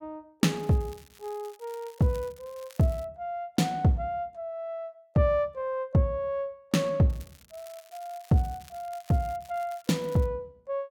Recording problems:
crackle; from 0.5 to 3 s and from 7 to 10 s; loose cable, SNR 24 dB

